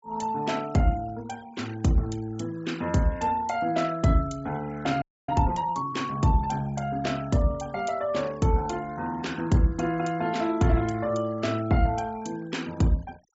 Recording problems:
treble missing; nothing above 8 kHz
noise reduction artefacts; signal-to-artefact ratio 23 dB
audio freezing; at 5 s

